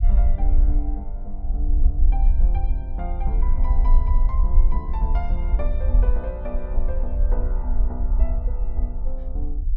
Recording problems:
rumble; below 50 Hz, SNR -12 dB

